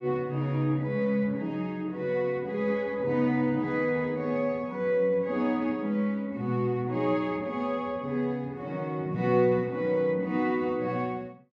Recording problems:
none

